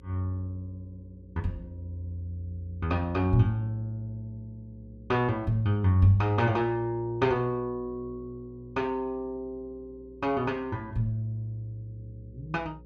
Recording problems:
electrical hum; 60 Hz, harmonics up to 540 Hz, SNR 22 dB

